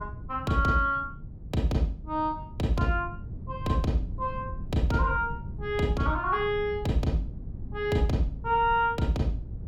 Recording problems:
wind on the microphone; below 140 Hz, SNR 12 dB

